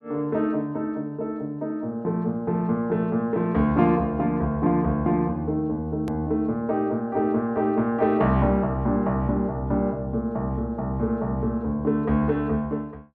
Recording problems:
click at an edit; at 6 s

